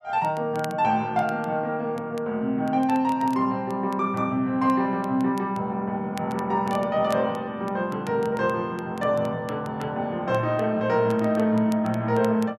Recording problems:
crackle; vinyl, SNR 24 dB

